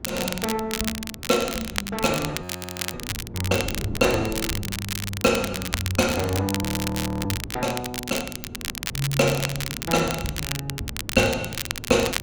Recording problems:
wind on the microphone; below 290 Hz, SNR 14 dB
crackle; vinyl, SNR 5 dB
frozen audio; at 2.5 s for 0.5 s and at 6.5 s for 0.5 s

